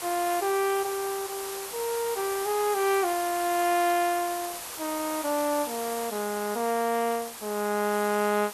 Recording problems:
hiss; SNR 8 dB

